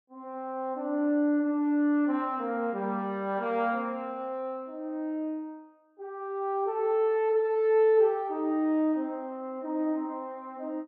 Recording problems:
none

